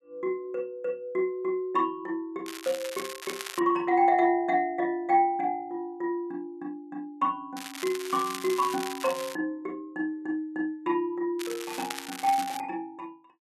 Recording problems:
crackling; from 2.5 to 3.5 s, from 7.5 to 9.5 s and from 11 to 13 s; loose cable, SNR 10 dB

